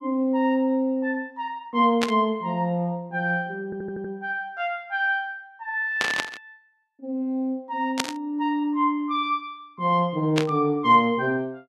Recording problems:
static burst; 4 times, first at 2 s; peak +5 dB vs average level
stutter; at 3.5 s

